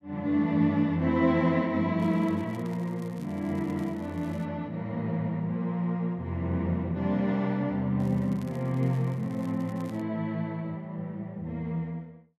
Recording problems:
crackling; from 2 to 4.5 s and from 8 to 10 s; loose cable, SNR 27 dB

